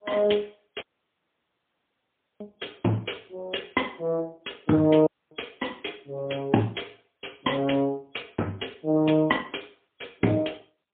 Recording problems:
phone line; 150 Hz to 3.4 kHz, AMR-NB, then MP3
audio cutting out; at 1 s for 1.5 s and at 5 s

